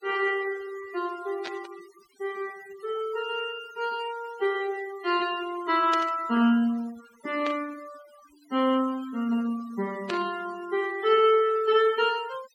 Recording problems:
denoising artefacts; signal-to-artefact ratio 20 dB
static burst; 4 times, first at 1.5 s; peak -3 dB vs average level

